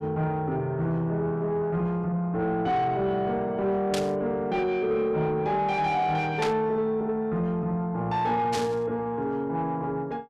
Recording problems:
distortion; soft clipping, signal-to-distortion ratio 12 dB
burst of static; at 4 s, at 6.5 s and at 8.5 s; peak -1 dB vs average level

